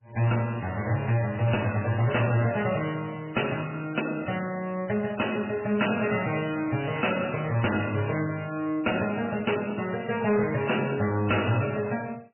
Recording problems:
lossy codec; MP3, log-spectral distance 6 dB, nothing above 2.8 kHz
distortion; hard clipping, signal-to-distortion ratio 10 dB

